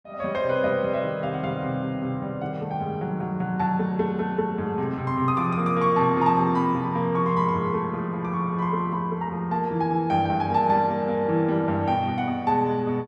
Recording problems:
none

